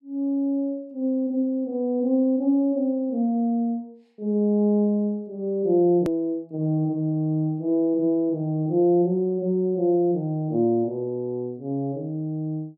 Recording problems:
hard cut with a click; at 6 s

